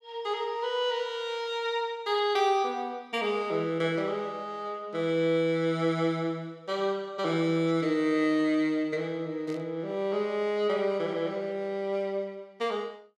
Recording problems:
static burst; at 9.5 s; peak -17 dB vs average level

